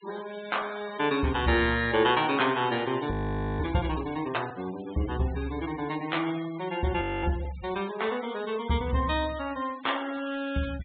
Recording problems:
treble missing; nothing above 4 kHz
denoising artefacts; signal-to-artefact ratio 16 dB
audio freezing; at 3 s and at 7 s

